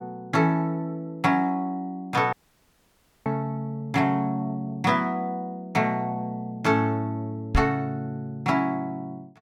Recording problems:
audio cutting out; at 2.5 s for 1 s
microphone thump; at 7.5 s; peak +7 dB vs average level

